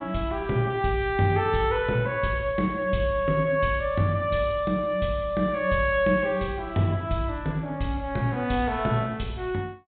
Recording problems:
treble missing; nothing above 4 kHz

